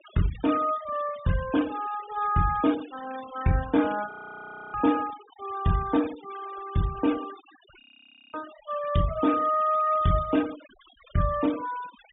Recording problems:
treble missing; nothing above 3.6 kHz
noise reduction artefacts; signal-to-artefact ratio 19 dB
frozen audio; at 4 s for 0.5 s and at 8 s for 0.5 s

